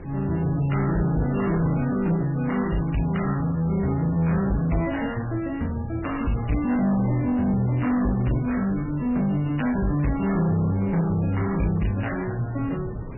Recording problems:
codec artefacts; MP3, log-spectral distance 3 dB, nothing above 2.9 kHz
distortion; soft clipping, signal-to-distortion ratio 11 dB
wind noise; below 330 Hz, SNR 14 dB

